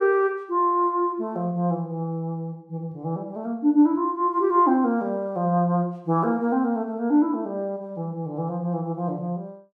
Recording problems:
none

